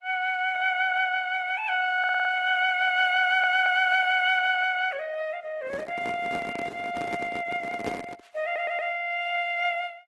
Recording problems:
lossy compression; AAC, then Opus, log-spectral distance 3 dB
audio stuttering; at 2 s, at 3 s and at 8.5 s
handling noise; from 5.5 to 8 s; peak -3 dB vs average level

